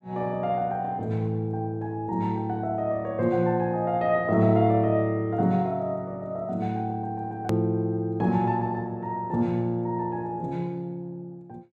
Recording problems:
edit click; at 7.5 s

